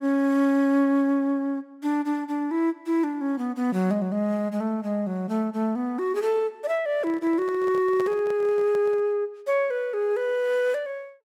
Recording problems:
microphone handling noise; from 7 to 9 s; peak -7 dB vs average level

